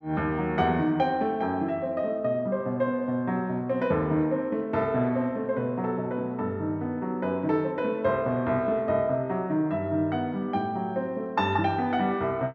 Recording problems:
none

